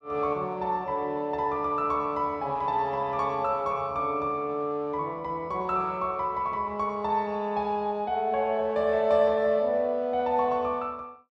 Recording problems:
none

